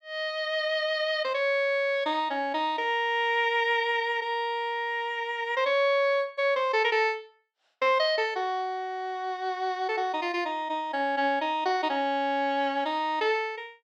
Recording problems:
none

